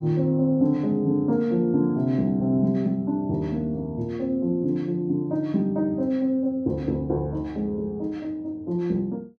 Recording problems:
none

